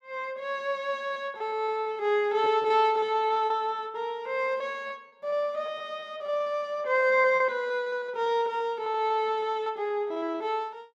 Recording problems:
lost packets; 11% of the sound replaced, filled with repeated pitch periods

